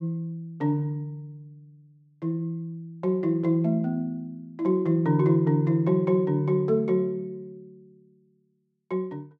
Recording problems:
none

